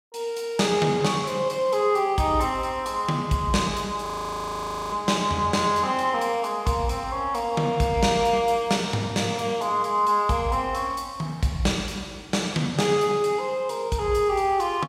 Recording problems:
frozen audio; at 4 s for 1 s

